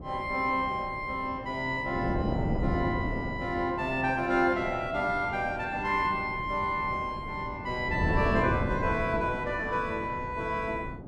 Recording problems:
wind noise; below 350 Hz, SNR 6 dB

